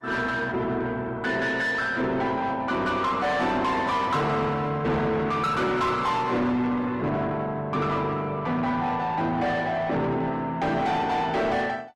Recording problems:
lossy compression; Opus, log-spectral distance 2 dB, nothing above 13.3 kHz
distorted audio; soft clipping, signal-to-distortion ratio 8 dB

